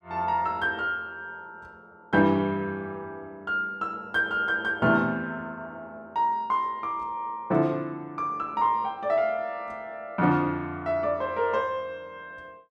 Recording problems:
none

